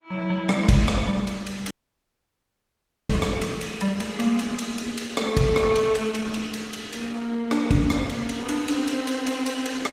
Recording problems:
codec artefacts; Opus, log-spectral distance 5 dB
audio cutting out; at 1.5 s for 1.5 s

